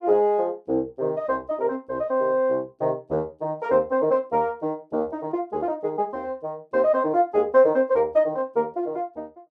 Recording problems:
none

